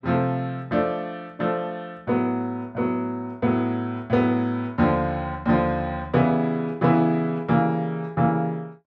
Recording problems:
none

